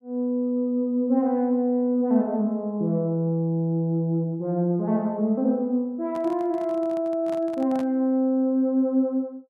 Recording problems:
microphone handling noise; from 6 to 8 s; peak -10 dB vs average level

